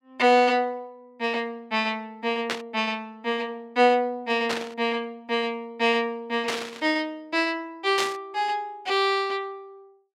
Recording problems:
static burst; 4 times, first at 2.5 s; peak +2 dB vs average level

